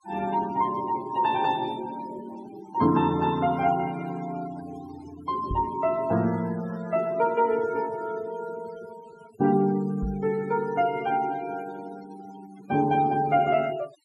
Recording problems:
noise reduction artefacts; signal-to-artefact ratio 19 dB
knock on the microphone; at 5.5 s and at 10 s; peak -1 dB vs average level

